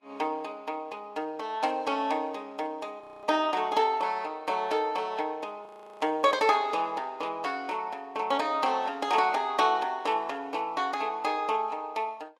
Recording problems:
lossy compression; Vorbis, log-spectral distance 2 dB, nothing above 13.8 kHz
frozen audio; at 3 s and at 5.5 s

